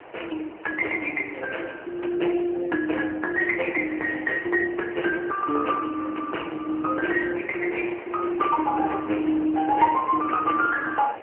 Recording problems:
phone line; 260 Hz to 2.3 kHz, AMR-NB
background hiss; SNR 18 dB

